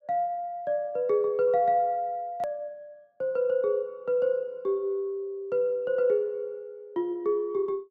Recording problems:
hard cut with a click; at 2.5 s

